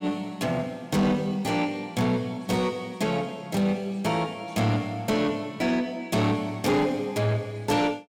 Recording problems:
distortion; soft clipping, signal-to-distortion ratio 11 dB

